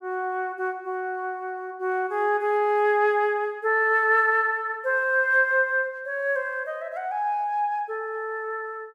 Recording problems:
none

